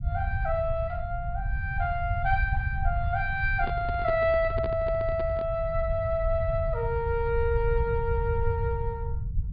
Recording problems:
treble missing; nothing above 4.8 kHz
rumble; below 98 Hz, SNR 4 dB
microphone handling noise; from 3.5 to 5.5 s; peak -5 dB vs average level

